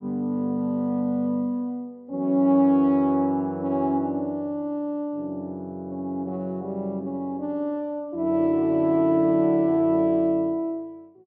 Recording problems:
none

